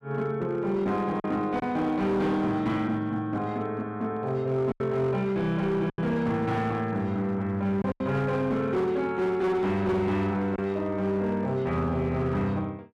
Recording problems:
distortion; hard clipping, signal-to-distortion ratio 12 dB
lost packets; 3% of the sound replaced, filled with silence

